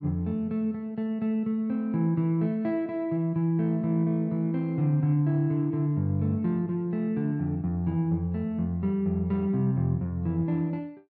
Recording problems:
none

